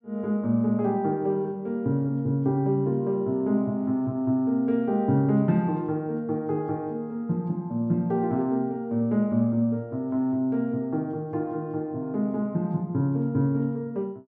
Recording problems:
none

